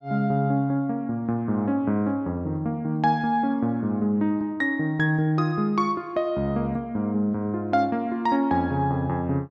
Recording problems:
none

